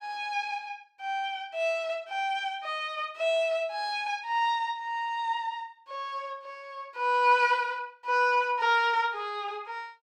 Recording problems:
none

